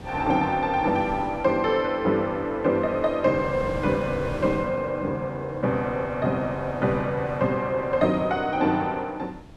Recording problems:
wind on the microphone; below 410 Hz, SNR 17 dB

